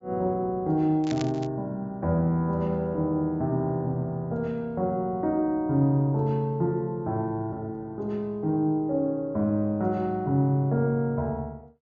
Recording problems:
treble cut off; nothing above 8 kHz
static burst; at 1 s; peak -6 dB vs average level

